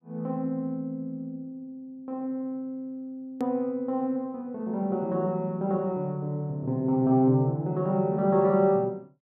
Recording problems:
hard cut with a click; at 3.5 s

